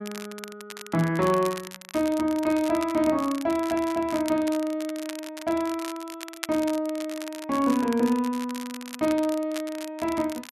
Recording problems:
crackle; vinyl, SNR 14 dB

